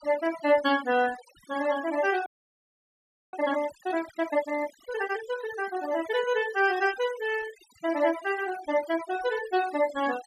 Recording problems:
noise reduction artefacts; signal-to-artefact ratio 15 dB
audio freezing; at 2.5 s for 1 s

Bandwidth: 14 kHz